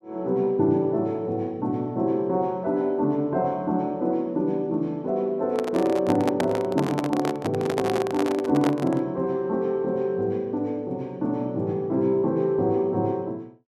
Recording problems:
handling noise; from 5.5 to 9 s; peak +2 dB vs average level

